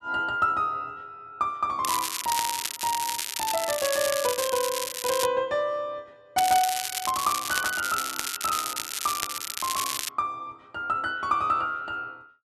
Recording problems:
crackle; from 2 to 5.5 s, from 6.5 to 8.5 s and from 8.5 to 10 s; loose cable, SNR 2 dB

